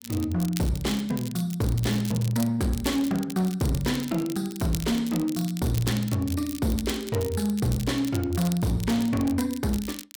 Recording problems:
distortion; hard clipping, uneven, signal-to-distortion ratio 11 dB
crackle; vinyl, SNR 13 dB

